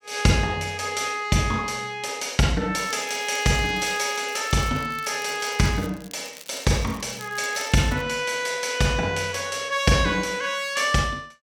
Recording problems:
crackle; from 2.5 to 8 s; loose cable, SNR 20 dB

